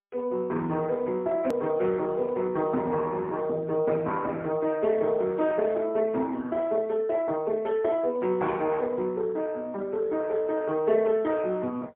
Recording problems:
telephone audio; 190 Hz to 3.1 kHz, AMR-NB, then MP3
click at an edit; at 1.5 s

